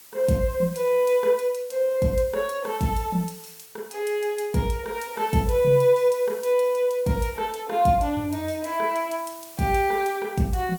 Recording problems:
hiss; slope +1 dB per octave, SNR 20 dB

